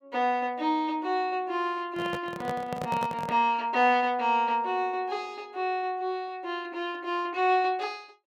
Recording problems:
handling noise; from 2 to 3.5 s; peak -2 dB vs average level

